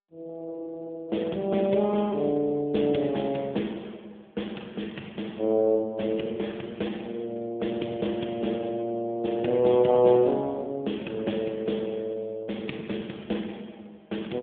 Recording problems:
phone line; 130 Hz to 3.5 kHz, AMR-NB

